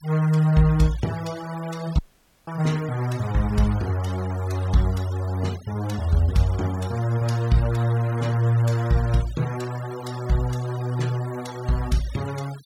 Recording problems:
noise reduction artefacts; signal-to-artefact ratio 19 dB
dropout; at 2 s

